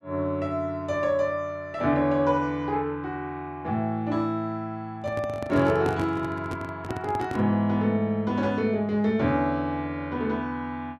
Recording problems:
handling noise; from 5 to 7.5 s; peak -2 dB vs average level

